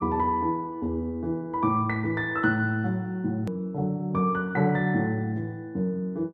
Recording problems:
hard cut with a click; at 3.5 s

